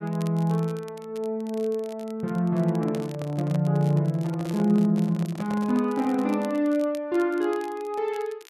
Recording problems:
crackle; vinyl, SNR 25 dB
handling noise; from 2.5 to 6.5 s; peak -8 dB vs average level

